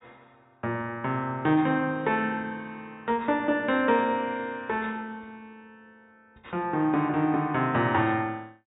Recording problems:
low-pass filter; nothing above 4 kHz

